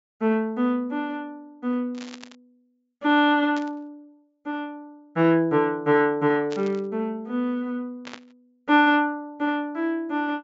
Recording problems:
low-pass filter; nothing above 8 kHz
burst of static; 4 times, first at 2 s; peak -10 dB vs average level

